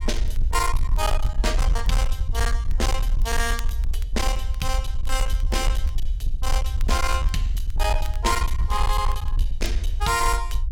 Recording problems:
distortion; hard clipping, signal-to-distortion ratio 11 dB
rumble; below 56 Hz, SNR -1 dB
crackling; vinyl, SNR 23 dB

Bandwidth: 17 kHz